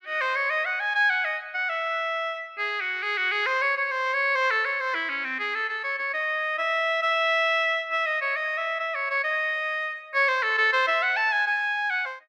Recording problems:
none

